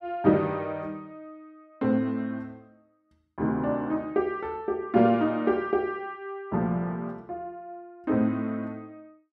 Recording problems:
none

